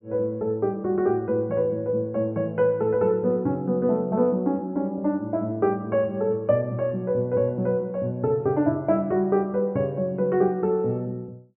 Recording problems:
treble cut off; nothing above 3.2 kHz

